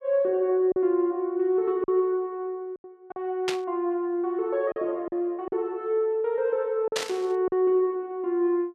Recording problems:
packet loss; 5% of the sound replaced, filled with silence
static burst; at 3.5 s and at 7 s; peak +2 dB vs average level

